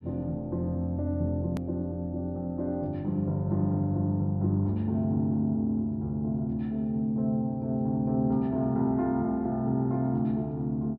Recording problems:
treble missing; nothing above 5.5 kHz
click at an edit; at 1.5 s

